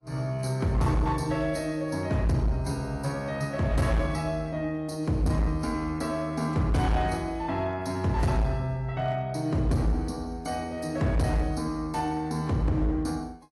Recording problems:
lossy compression; AAC, log-spectral distance 2 dB, nothing above 11.3 kHz
distorted audio; hard clipping, uneven, signal-to-distortion ratio 11 dB

